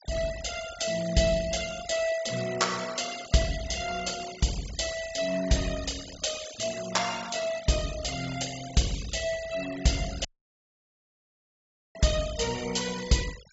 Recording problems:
treble missing; nothing above 8 kHz
denoising artefacts; signal-to-artefact ratio 13 dB
dropout; at 10 s for 1.5 s

